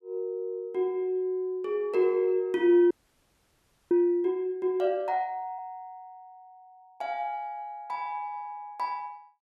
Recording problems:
frozen audio; at 3 s for 1 s

